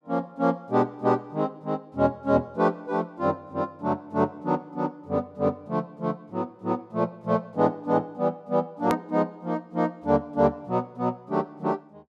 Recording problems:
click at an edit; at 9 s

